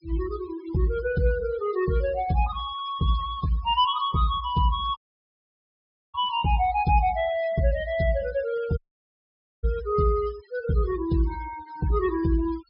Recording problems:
treble cut off; nothing above 5.5 kHz
denoising artefacts; signal-to-artefact ratio 19 dB
audio cutting out; at 5 s for 1 s and at 9 s for 1 s

